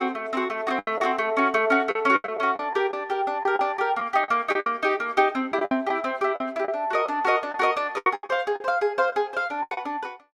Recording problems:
packet loss; 11% of the sound replaced, filled with the last packet

